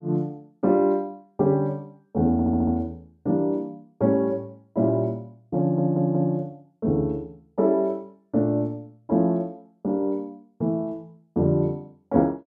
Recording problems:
audio stuttering; at 2.5 s and at 5.5 s

